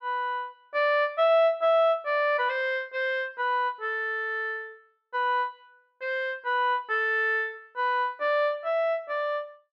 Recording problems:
none

